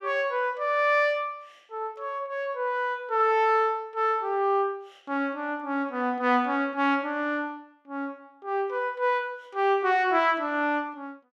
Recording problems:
none

